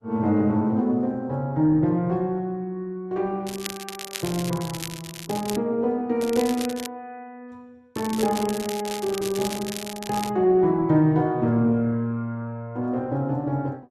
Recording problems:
lossy compression; Opus, log-spectral distance 3 dB
crackling; from 3.5 to 5.5 s, at 6 s and from 8 to 10 s; loose cable, SNR 11 dB

